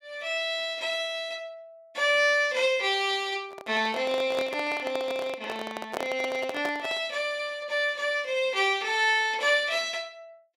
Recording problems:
microphone handling noise; from 3.5 to 7 s; peak -2 dB vs average level

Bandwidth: 16 kHz